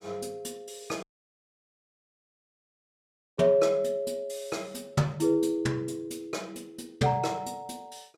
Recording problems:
dropout; at 1 s for 2.5 s

